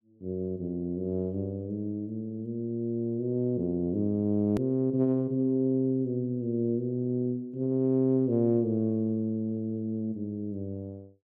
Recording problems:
click at an edit; at 4.5 s

